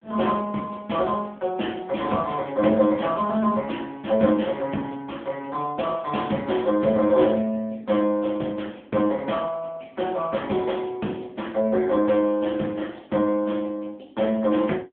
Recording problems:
phone line; 150 Hz to 3.5 kHz, AMR-NB

